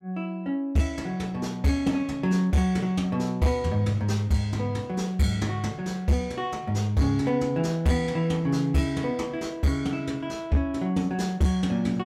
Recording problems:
distorted audio; hard clipping, signal-to-distortion ratio 12 dB

